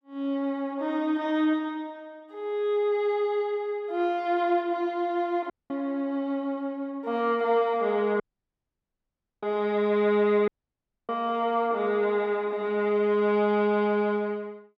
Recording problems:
audio cutting out; at 5.5 s, at 8 s for 1 s and at 10 s for 0.5 s

